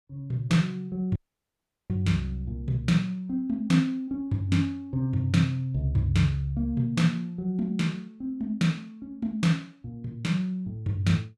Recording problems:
audio cutting out; at 1 s for 0.5 s

